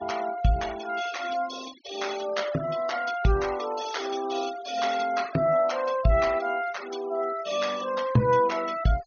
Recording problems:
treble missing; nothing above 6.6 kHz
noise reduction artefacts; signal-to-artefact ratio 16 dB

